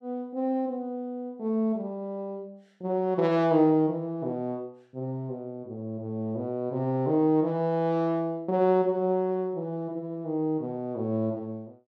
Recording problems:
none

